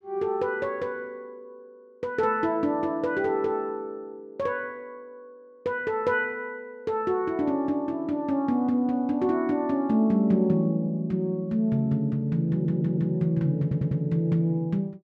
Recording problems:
stutter; at 12 s and at 14 s

